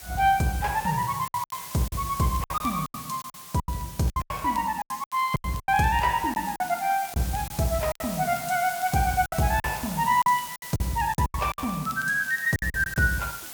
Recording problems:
background hiss; slope 0 dB per octave, SNR 12 dB
crackle; vinyl, SNR 28 dB
lost packets; 13% of the sound replaced, filled with silence

